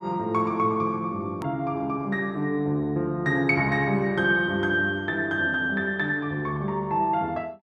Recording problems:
click at an edit; at 1.5 s

